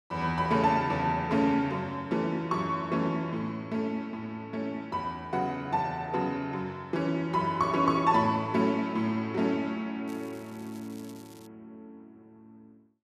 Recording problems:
crackle; from 10 to 11 s; loose cable, SNR 26 dB

